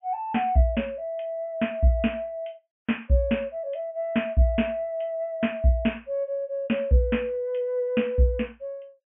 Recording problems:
low-pass filter; nothing above 3.1 kHz

